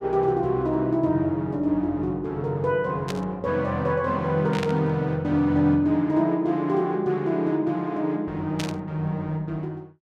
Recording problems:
static burst; at 3 s, at 4.5 s and at 8.5 s; peak -3 dB vs average level

